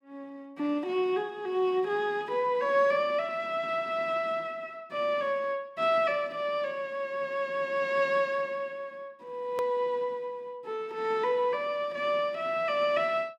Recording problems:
hard cut with a click; at 9.5 s

